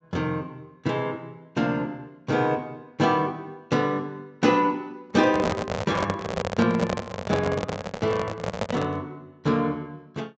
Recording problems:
treble missing; nothing above 8 kHz
handling noise; from 5 to 9 s; peak +3 dB vs average level

